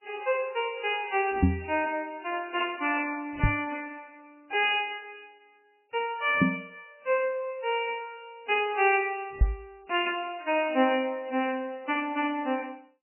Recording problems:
lossy codec; MP3, log-spectral distance 5 dB, nothing above 2.6 kHz
knock on the microphone; 4 times, first at 1.5 s; peak +10 dB vs average level

